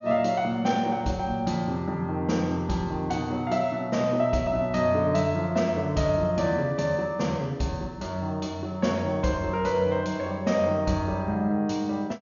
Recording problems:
treble missing; nothing above 6.9 kHz

